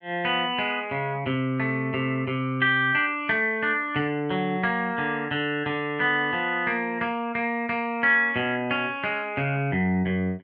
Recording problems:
none

